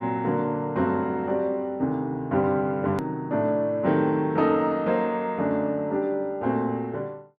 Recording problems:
hard cut with a click; at 3 s

